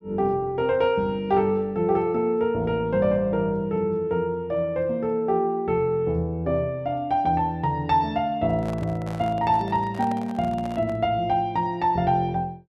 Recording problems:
microphone handling noise; from 8.5 to 11 s; peak -10 dB vs average level

